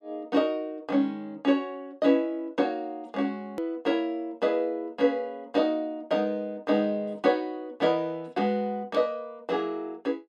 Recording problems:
click at an edit; at 3.5 s

